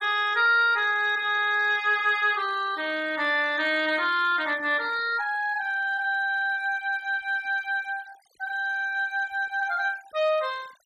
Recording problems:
noise reduction artefacts; signal-to-artefact ratio 22 dB

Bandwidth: 14.5 kHz